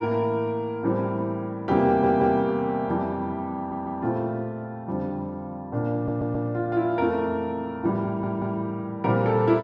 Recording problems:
audio stuttering; 4 times, first at 2 s

